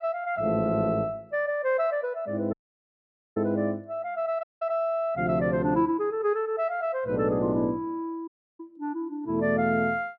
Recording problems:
dropout; at 2.5 s for 1 s, at 4.5 s and at 8.5 s

